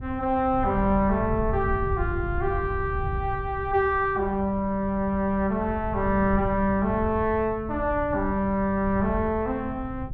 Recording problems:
wind on the microphone; below 110 Hz, SNR 9 dB

